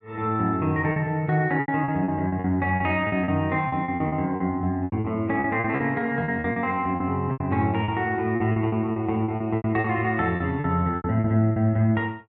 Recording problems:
lost packets; 14% of the sound replaced, filled with repeated pitch periods

